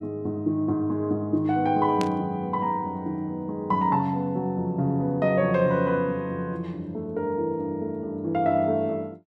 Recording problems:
burst of static; at 2 s; peak -4 dB vs average level

